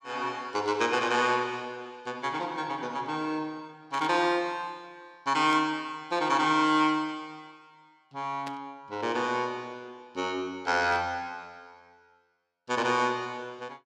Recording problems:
static burst; 4 times, first at 4 s; peak -8 dB vs average level

